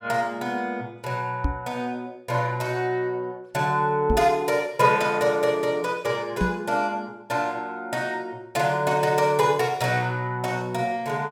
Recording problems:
microphone thump; at 1.5 s, at 4 s and at 6.5 s; peak +3 dB vs average level

